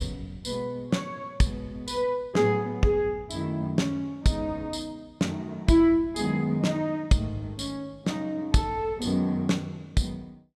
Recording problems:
none

